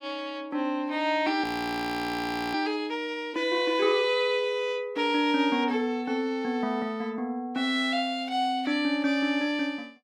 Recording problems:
frozen audio; at 1.5 s for 1 s

